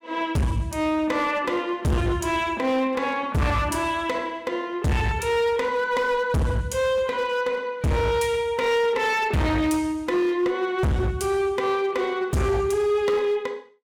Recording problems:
distorted audio; hard clipping, signal-to-distortion ratio 6 dB

